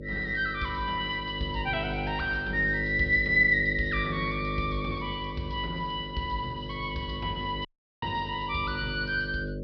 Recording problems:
low-pass filter; nothing above 5.5 kHz
electrical hum; 50 Hz, harmonics up to 600 Hz, SNR 8 dB
audio cutting out; at 7.5 s

